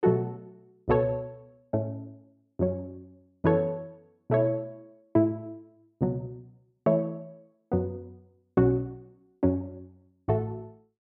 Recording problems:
none

